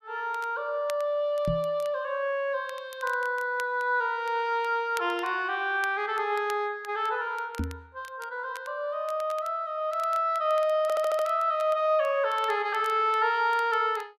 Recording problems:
crackle; vinyl, SNR 23 dB
knock on the microphone; at 1.5 s and at 7.5 s; peak 0 dB vs average level
stutter; at 11 s

